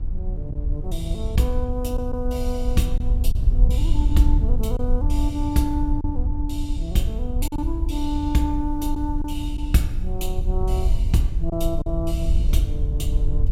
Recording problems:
hum; 60 Hz, harmonics up to 1 kHz, SNR 25 dB
wind on the microphone; below 62 Hz, SNR -2 dB
lost packets; 2% of the sound replaced, filled with silence

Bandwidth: 16 kHz